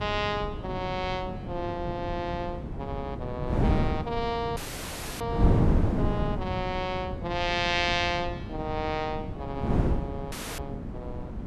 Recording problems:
wind on the microphone; below 250 Hz, SNR 0 dB
dropout; at 4.5 s for 0.5 s and at 10 s

